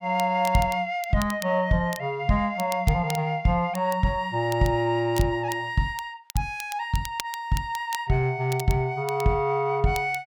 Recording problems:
crackle; vinyl, SNR 16 dB

